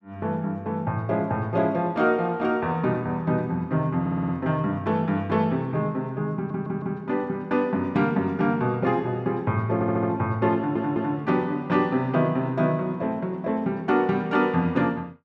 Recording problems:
stutter; 4 times, first at 4 s

